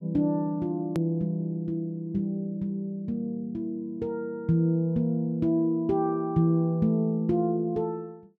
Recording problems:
click at an edit; at 1 s

